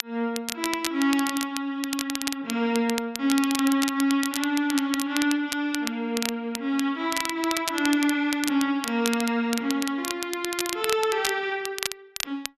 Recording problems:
crackling; vinyl, SNR 6 dB

